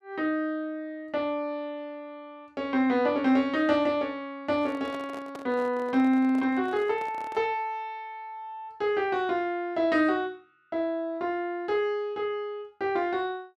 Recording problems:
handling noise; from 4.5 to 7.5 s; peak -9 dB vs average level

